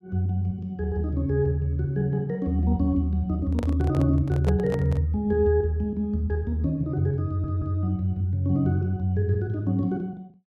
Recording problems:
handling noise; from 3.5 to 5 s; peak -3 dB vs average level
audio stuttering; at 7.5 s

